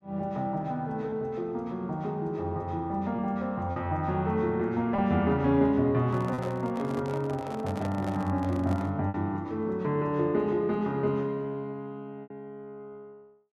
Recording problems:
lost packets; 2% of the sound replaced, filled with repeated pitch periods
microphone handling noise; from 6 to 9 s; peak -5 dB vs average level

